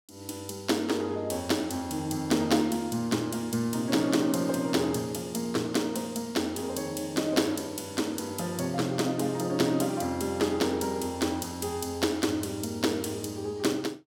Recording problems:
none

